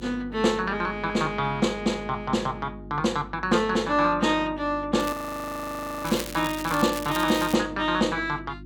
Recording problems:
electrical hum; 50 Hz, harmonics up to 350 Hz, SNR 17 dB
crackling; from 5 to 7.5 s; loose cable, SNR 12 dB
audio freezing; at 5 s for 1 s

